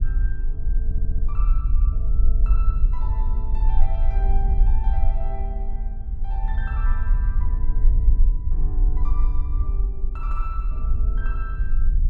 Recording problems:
rumble; below 46 Hz, strongest tone 20 Hz, SNR -15 dB
stutter; at 1 s

